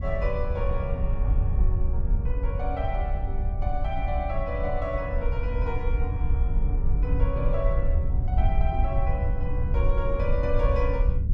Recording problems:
rumble; below 72 Hz, SNR -5 dB

